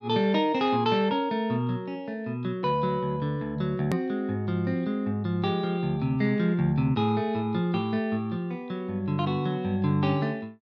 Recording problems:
click at an edit; at 4 s

